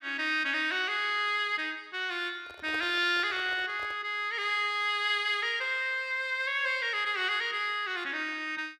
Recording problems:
microphone handling noise; from 2.5 to 4 s; peak -10 dB vs average level

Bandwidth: 14.5 kHz